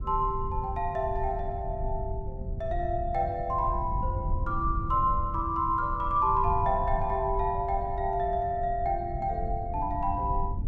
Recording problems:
rumble; below 96 Hz, SNR 7 dB

